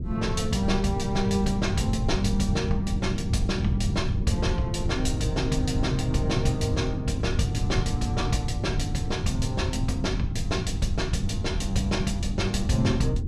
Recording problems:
low-frequency rumble; below 140 Hz, SNR 1 dB

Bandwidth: 14 kHz